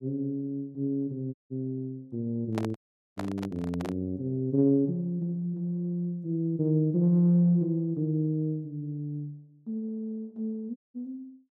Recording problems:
dropout; at 1.5 s, at 3 s and at 11 s
microphone handling noise; from 2.5 to 4 s; peak -2 dB vs average level

